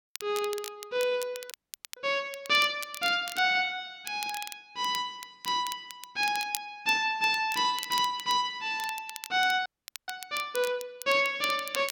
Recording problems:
crackling; vinyl, SNR 13 dB
frozen audio; at 1.5 s and at 9.5 s

